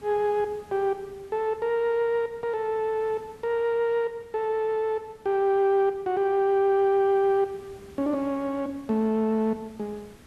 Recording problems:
hiss; slope -4 dB per octave, SNR 27 dB

